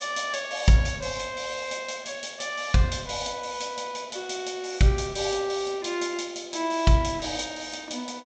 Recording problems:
treble cut off; nothing above 8 kHz

